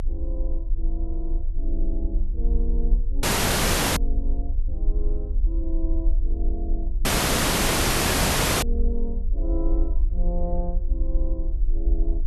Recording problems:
low-frequency rumble; below 44 Hz, strongest tone 24 Hz, SNR -8 dB
dropout; at 3 s for 0.5 s and at 7 s for 1.5 s

